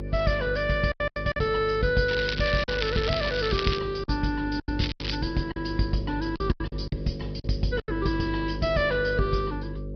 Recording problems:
treble missing; nothing above 5.2 kHz
codec artefacts; Opus, log-spectral distance 5 dB
electrical hum; 50 Hz, harmonics up to 550 Hz, SNR 8 dB
packet loss; 8% of the sound replaced, filled with silence
crackling; from 2 to 4 s and at 5 s; loose cable, SNR 6 dB

